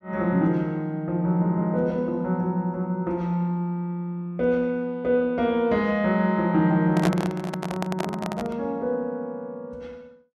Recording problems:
handling noise; from 7 to 8.5 s; peak +3 dB vs average level

